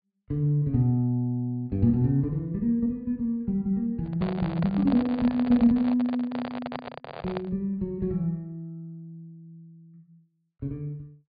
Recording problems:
low-pass filter; nothing above 4.8 kHz
microphone handling noise; from 4 to 7.5 s; peak -5 dB vs average level

